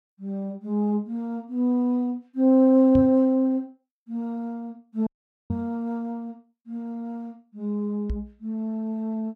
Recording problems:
knock on the microphone; at 3 s, at 5.5 s and at 8 s; peak 0 dB vs average level
audio cutting out; at 5 s

